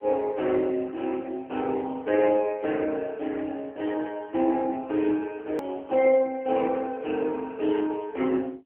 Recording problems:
telephone audio; 260 Hz to 3.1 kHz, AMR-NB
click at an edit; at 5.5 s

